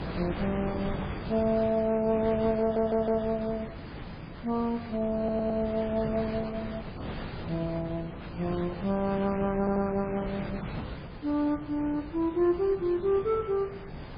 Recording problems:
lossy codec; MP3, then MP3, log-spectral distance 3 dB
wind on the microphone; below 720 Hz, SNR 10 dB
stutter; at 2.5 s, at 5 s and at 9.5 s

